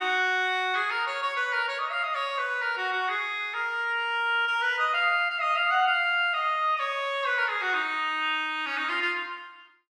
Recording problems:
none

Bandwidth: 14.5 kHz